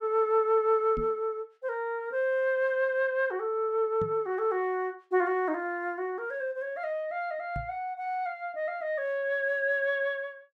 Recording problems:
knock on the microphone; at 1 s, at 4 s and at 7.5 s; peak -4 dB vs average level

